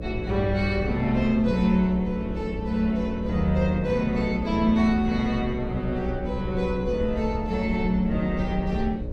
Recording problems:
electrical hum; 60 Hz, harmonics up to 600 Hz, SNR 10 dB
rumble; below 82 Hz, SNR 13 dB

